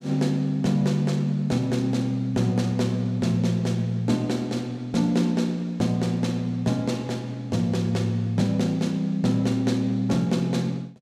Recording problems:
none

